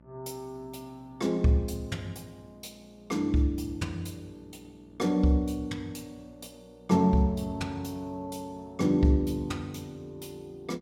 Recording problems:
electrical hum; 60 Hz, harmonics up to 1.2 kHz, SNR 27 dB

